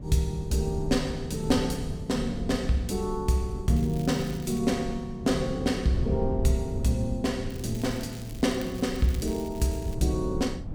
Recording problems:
wind noise; below 150 Hz, SNR 9 dB
crackling; at 4 s and from 7.5 to 10 s; loose cable, SNR 20 dB

